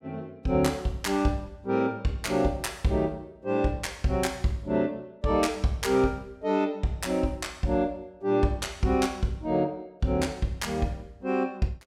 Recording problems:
none

